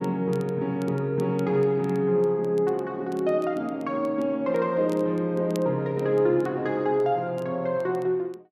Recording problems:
crackle; vinyl, SNR 29 dB

